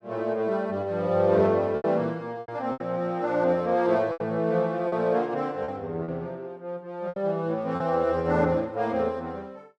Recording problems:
lost packets; 6% of the sound replaced, filled with repeated pitch periods

